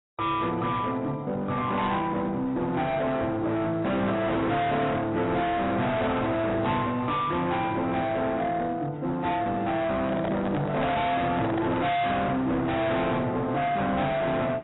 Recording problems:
codec artefacts; AAC, log-spectral distance 3 dB, nothing above 3.8 kHz
distorted audio; hard clipping, signal-to-distortion ratio 6 dB
handling noise; from 10 to 12 s; peak +1 dB vs average level

